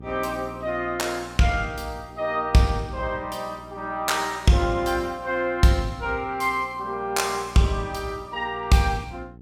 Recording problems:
electrical hum; 60 Hz, harmonics up to 540 Hz, SNR 21 dB

